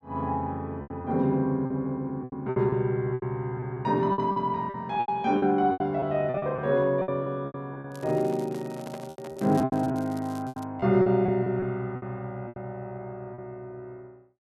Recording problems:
packet loss; 13% of the sound replaced, filled with repeated pitch periods
crackling; from 8 to 11 s; loose cable, SNR 25 dB
microphone handling noise; from 8 to 10 s; peak -8 dB vs average level

